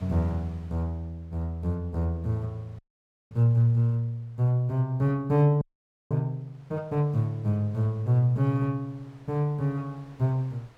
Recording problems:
wind noise; below 1.6 kHz, SNR 31 dB
frozen audio; at 3 s for 0.5 s and at 5.5 s for 0.5 s

